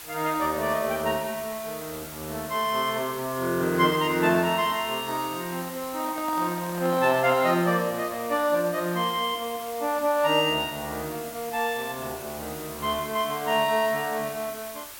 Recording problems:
hiss; slope 0 dB per octave, SNR 13 dB
microphone handling noise; from 6 to 7.5 s; peak -8 dB vs average level

